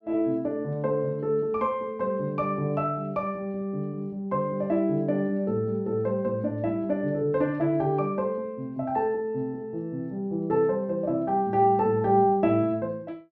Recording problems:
none

